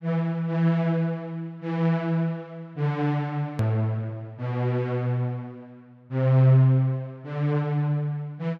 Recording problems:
click at an edit; at 3.5 s

